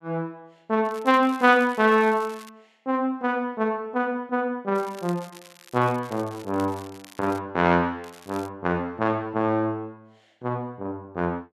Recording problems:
crackling; from 1 to 2.5 s, from 5 to 7.5 s and at 8 s; loose cable, SNR 23 dB

